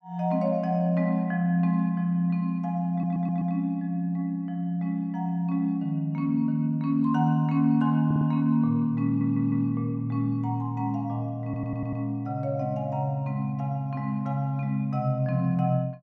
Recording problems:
stutter; 4 times, first at 3 s

